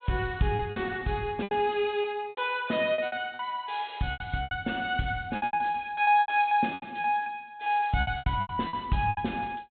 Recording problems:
low-pass filter; nothing above 4 kHz
lost packets; 16% of the sound replaced, filled with repeated pitch periods

